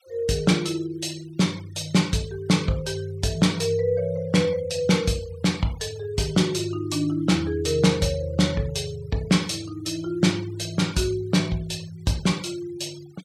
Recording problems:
denoising artefacts; signal-to-artefact ratio 22 dB

